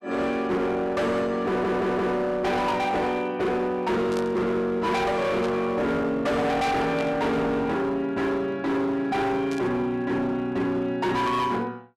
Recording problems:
distortion; hard clipping, signal-to-distortion ratio 8 dB
audio stuttering; at 1.5 s
static burst; 4 times, first at 4 s; peak -9 dB vs average level

